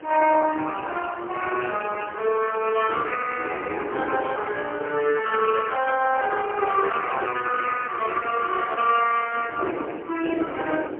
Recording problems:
telephone audio; 260 Hz to 2.8 kHz, AMR-NB, then MP3
hiss; SNR 29 dB
wind on the microphone; below 560 Hz, SNR 11 dB

